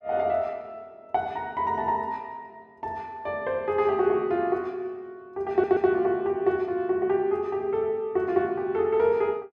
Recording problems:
audio stuttering; at 5.5 s

